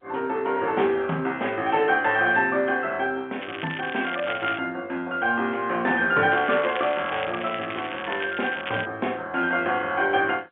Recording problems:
telephone audio; 220 Hz to 3.4 kHz, G.711
crackle; from 3.5 to 4.5 s and from 6.5 to 9 s; loose cable, SNR 11 dB

